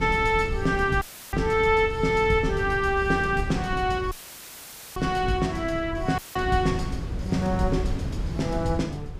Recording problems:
wind noise; below 150 Hz, SNR 8 dB
dropout; at 1 s, at 4 s for 1 s and at 6 s; filled with static

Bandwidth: 15 kHz